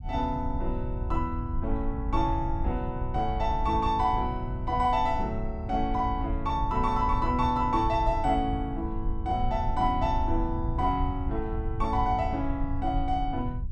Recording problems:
rumble; below 82 Hz, SNR 5 dB

